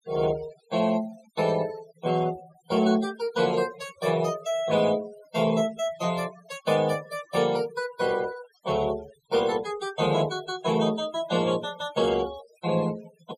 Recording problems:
denoising artefacts; signal-to-artefact ratio 17 dB

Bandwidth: 14.5 kHz